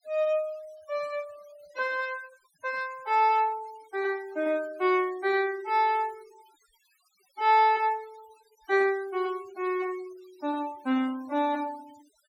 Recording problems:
denoising artefacts; signal-to-artefact ratio 24 dB

